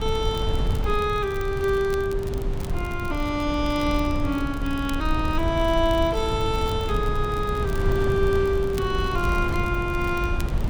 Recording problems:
wind noise; below 130 Hz, SNR 4 dB
crackle; vinyl, SNR 21 dB

